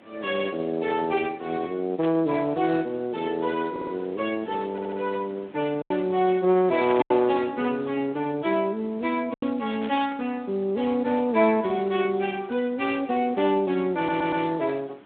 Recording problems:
telephone audio; 190 Hz to 3.6 kHz, Speex
background hiss; SNR 24 dB
lost packets; 1.7% of the sound replaced, filled with silence
burst of static; at 2 s, at 7 s and at 10 s; peak -8 dB vs average level
stutter; at 3.5 s, at 4.5 s and at 14 s

